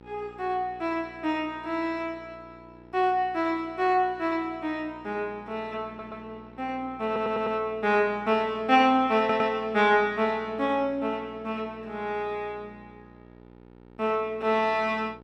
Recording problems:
hum; 60 Hz, harmonics up to 1.9 kHz, SNR 23 dB
stutter; at 6 s, at 7 s and at 9 s

